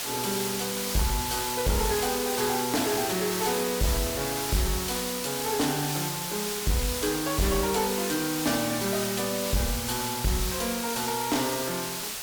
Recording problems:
distortion; soft clipping, signal-to-distortion ratio 8 dB
hiss; slope 0 dB per octave, SNR 1 dB

